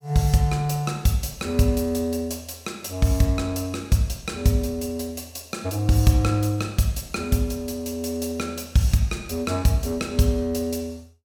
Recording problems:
none

